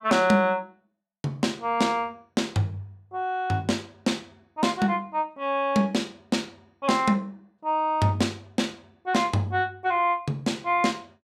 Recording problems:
none

